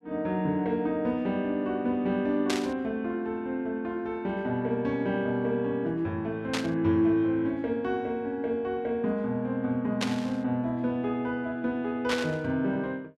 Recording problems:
burst of static; 4 times, first at 2.5 s; peak +2 dB vs average level

